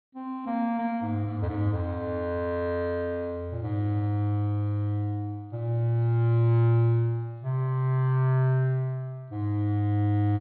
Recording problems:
treble missing; nothing above 4.3 kHz

